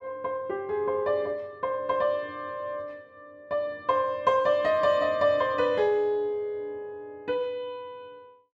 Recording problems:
none

